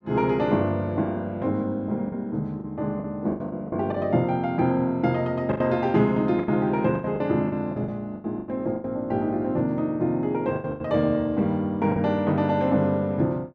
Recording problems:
lost packets; 9% of the sound replaced, filled with the last packet

